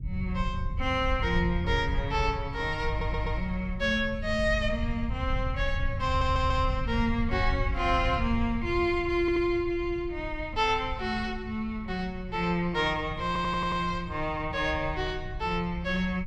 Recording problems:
low-frequency rumble; below 92 Hz, SNR 6 dB
audio stuttering; 4 times, first at 3 s

